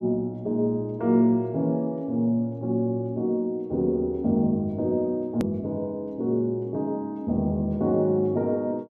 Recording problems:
edit click; at 5.5 s

